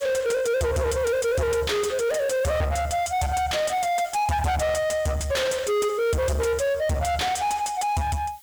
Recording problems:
distortion; soft clipping, signal-to-distortion ratio 6 dB
background hiss; SNR 25 dB

